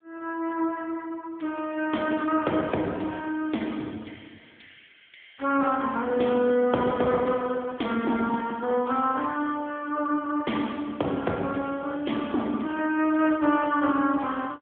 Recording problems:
phone line; 190 Hz to 3.4 kHz, AMR-NB

